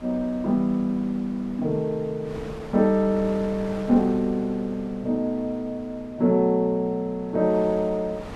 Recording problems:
wind noise; below 880 Hz, SNR 18 dB

